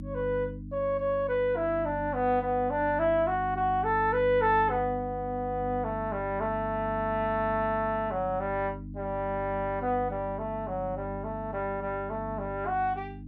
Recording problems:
mains hum; 50 Hz, harmonics up to 300 Hz, SNR 11 dB

